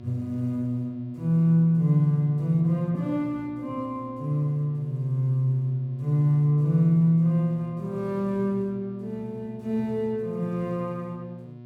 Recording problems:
hum; 60 Hz, harmonics up to 720 Hz, SNR 17 dB

